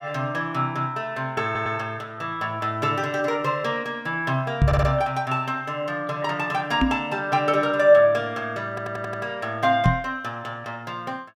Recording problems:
audio stuttering; at 1.5 s, at 4.5 s and at 8.5 s
knock on the microphone; at 4.5 s, at 7 s and at 10 s; peak +8 dB vs average level

